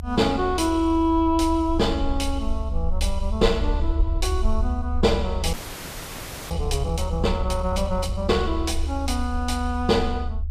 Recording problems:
low-frequency rumble; below 74 Hz, SNR 4 dB
audio freezing; at 5.5 s for 1 s

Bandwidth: 14.5 kHz